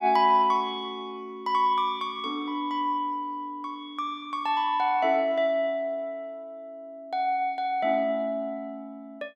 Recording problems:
none

